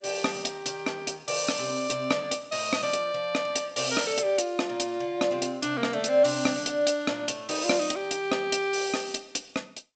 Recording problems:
codec artefacts; G.722, log-spectral distance 6 dB, nothing above 7.8 kHz

